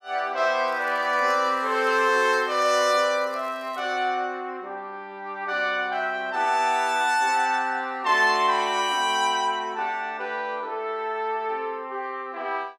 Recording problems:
crackle; from 0.5 to 3 s and at 3 s; loose cable, SNR 30 dB

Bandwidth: 15.5 kHz